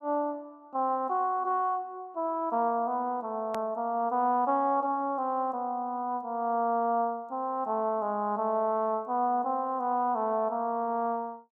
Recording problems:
edit click; at 3.5 s

